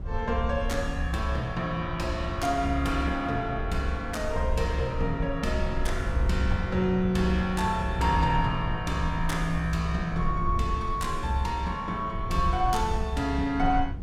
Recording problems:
rumble; below 62 Hz, SNR 9 dB
wind on the microphone; below 130 Hz, SNR 12 dB

